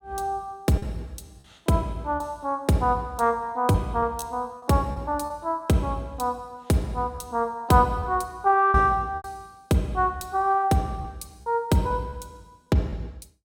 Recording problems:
packet loss; 5% of the sound replaced, filled with repeated pitch periods

